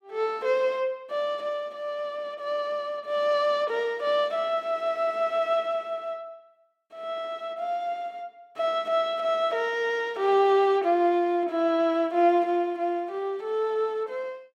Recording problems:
none

